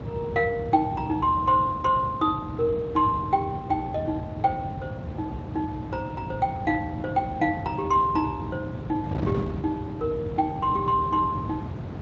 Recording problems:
lossy codec; Speex, log-spectral distance 2 dB
wind noise; below 310 Hz, SNR 8 dB

